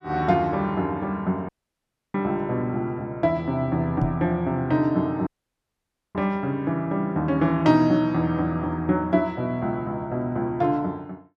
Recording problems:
audio cutting out; at 1.5 s for 0.5 s and at 5.5 s for 1 s
microphone thump; at 4 s; peak +2 dB vs average level

